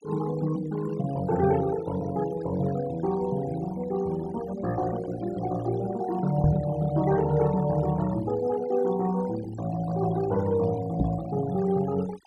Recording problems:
denoising artefacts; signal-to-artefact ratio 16 dB
microphone thump; at 6.5 s and at 11 s; peak +5 dB vs average level

